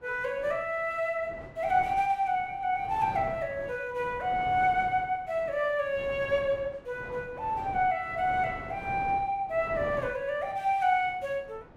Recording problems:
wind on the microphone; below 720 Hz, SNR 16 dB

